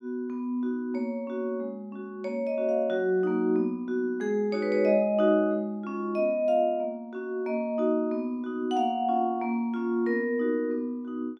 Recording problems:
none

